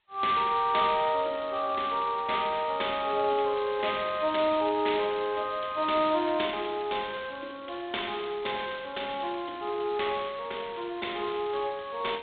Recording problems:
telephone audio; 260 Hz to 3.8 kHz, G.726

